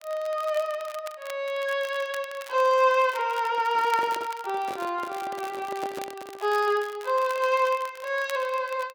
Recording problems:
crackle; vinyl, SNR 19 dB
handling noise; from 3.5 to 6.5 s; peak -6 dB vs average level

